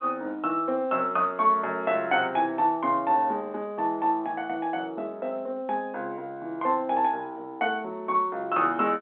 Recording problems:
telephone audio; 240 Hz to 3.6 kHz, G.711

